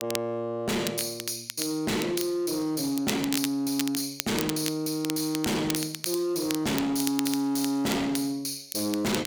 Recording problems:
distorted audio; hard clipping, signal-to-distortion ratio 6 dB
crackling; vinyl, SNR 8 dB

